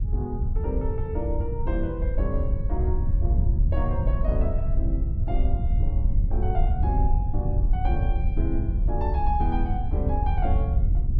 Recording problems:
wind on the microphone; below 80 Hz, SNR -7 dB

